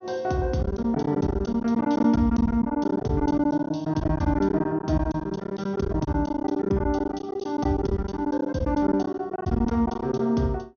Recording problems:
low-pass filter; nothing above 6.3 kHz
lost packets; 15% of the sound replaced, filled with silence

